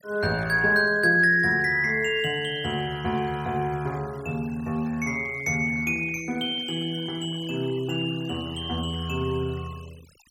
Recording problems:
noise reduction artefacts; signal-to-artefact ratio 24 dB

